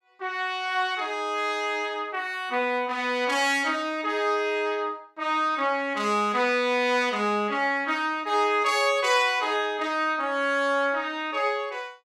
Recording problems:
none

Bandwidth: 15.5 kHz